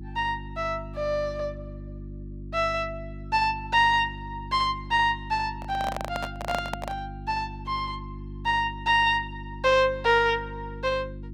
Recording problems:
electrical hum; 50 Hz, harmonics up to 350 Hz, SNR 14 dB
microphone handling noise; from 5.5 to 7 s; peak -1 dB vs average level

